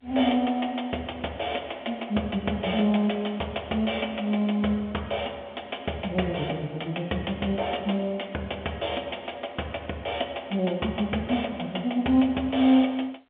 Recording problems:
phone line; 240 Hz to 3.5 kHz, G.711

